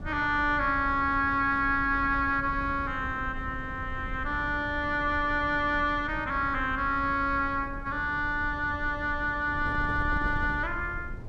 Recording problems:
wind noise; below 130 Hz, SNR 12 dB

